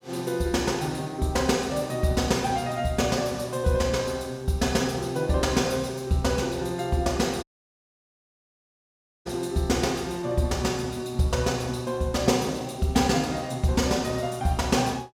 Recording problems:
dropout; at 7.5 s for 2 s

